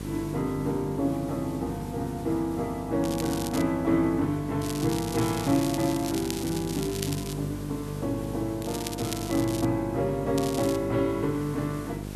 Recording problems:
mains hum; 50 Hz, harmonics up to 600 Hz, SNR 9 dB
background hiss; slope -3 dB per octave, SNR 19 dB
crackling; 4 times, first at 3 s; loose cable, SNR 10 dB

